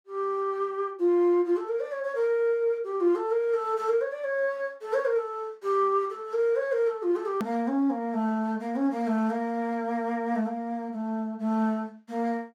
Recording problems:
hard cut with a click; at 7.5 s

